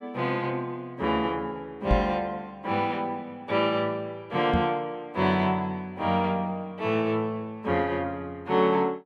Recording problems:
microphone thump; at 2 s and at 4.5 s; peak +6 dB vs average level

